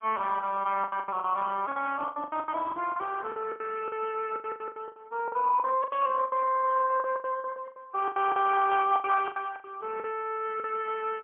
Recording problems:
phone line; 260 Hz to 3.3 kHz, AMR-NB, then MP3
packet loss; 18% of the sound replaced, filled with the last packet

